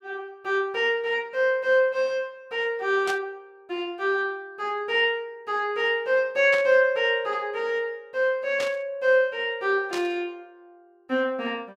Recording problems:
burst of static; 4 times, first at 3 s; peak -5 dB vs average level

